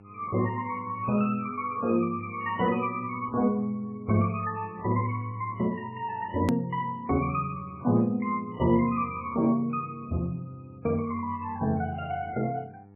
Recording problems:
codec artefacts; MP3, log-spectral distance 2 dB, nothing above 13.1 kHz
hum; 50 Hz, harmonics up to 1 kHz, SNR 23 dB
hard cut with a click; at 6.5 s

